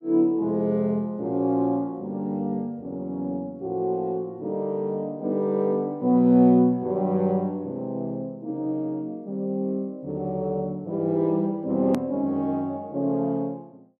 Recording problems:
hard cut with a click; at 12 s

